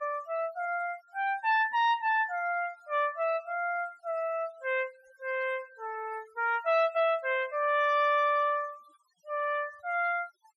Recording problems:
noise reduction artefacts; signal-to-artefact ratio 25 dB

